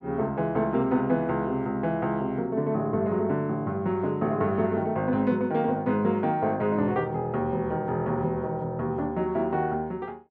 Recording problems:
none

